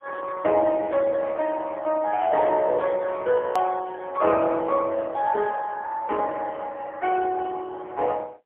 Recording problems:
telephone audio; 340 Hz to 3 kHz, AMR-NB, then MP3
click at an edit; at 3.5 s

